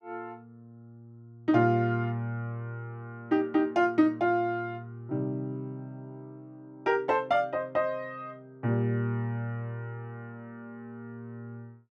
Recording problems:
none

